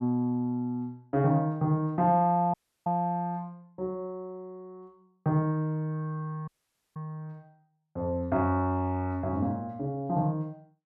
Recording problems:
audio cutting out; at 2.5 s and at 6.5 s

